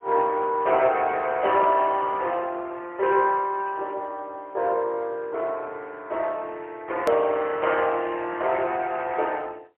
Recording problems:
telephone audio; 340 Hz to 3.2 kHz, AMR-NB, then MP3
click at an edit; at 7 s

